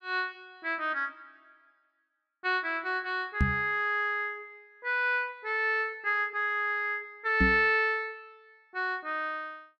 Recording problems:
microphone bump; at 3.5 s and at 7.5 s; peak +6 dB vs average level

